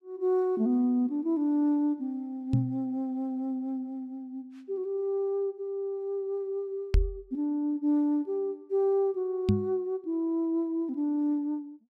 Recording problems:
knock on the microphone; at 2.5 s, at 7 s and at 9.5 s; peak +8 dB vs average level

